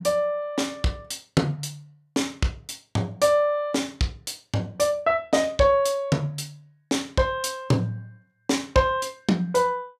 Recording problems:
none

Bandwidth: 14.5 kHz